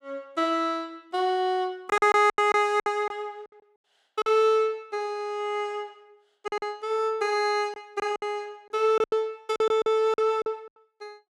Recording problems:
packet loss; 9% of the sound replaced, filled with silence

